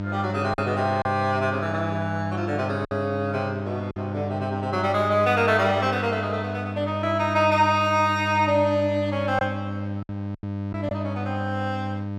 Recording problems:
mains hum; 50 Hz, harmonics up to 900 Hz, SNR 6 dB
packet loss; 2% of the sound replaced, filled with silence

